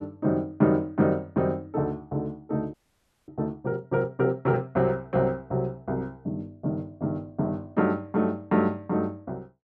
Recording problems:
audio freezing; at 2.5 s for 0.5 s

